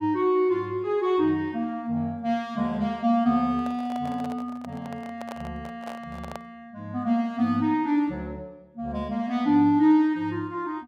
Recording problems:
microphone handling noise; from 3.5 to 6.5 s; peak -9 dB vs average level

